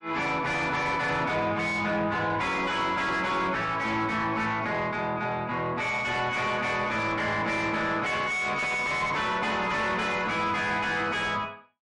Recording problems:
lossy codec; MP3, log-spectral distance 2 dB, nothing above 10.4 kHz
distortion; soft clipping, signal-to-distortion ratio 8 dB

